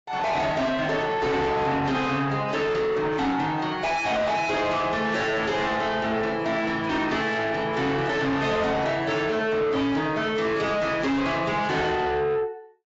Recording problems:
lossy codec; AAC, log-spectral distance 3 dB, nothing above 7.3 kHz
distorted audio; soft clipping, signal-to-distortion ratio 7 dB

